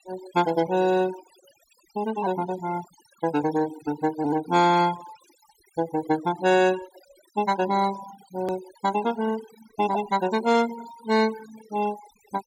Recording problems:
denoising artefacts; signal-to-artefact ratio 16 dB
hard cut with a click; at 8.5 s

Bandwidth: 17 kHz